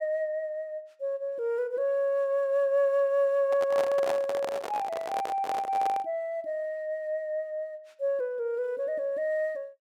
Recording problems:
microphone handling noise; from 3.5 to 6 s; peak 0 dB vs average level

